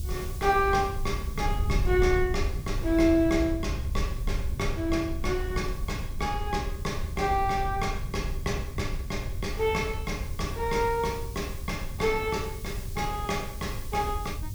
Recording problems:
hiss; SNR 19 dB
wind on the microphone; below 88 Hz, SNR 5 dB

